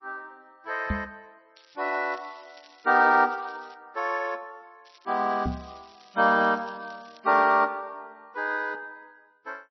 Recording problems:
lossy compression; MP3, log-spectral distance 6 dB, nothing above 5.7 kHz
knock on the microphone; at 1 s and at 5.5 s; peak 0 dB vs average level
crackling; from 1.5 to 3.5 s and from 5 to 7 s; loose cable, SNR 29 dB

